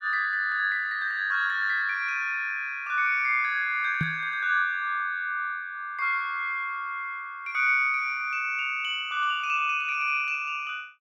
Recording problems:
microphone bump; at 4 s; peak +1 dB vs average level

